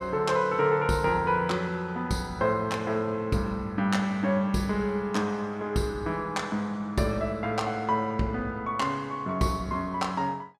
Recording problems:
none

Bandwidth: 15 kHz